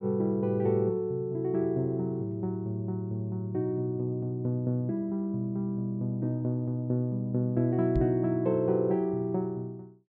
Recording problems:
knock on the microphone; at 8 s; peak +2 dB vs average level

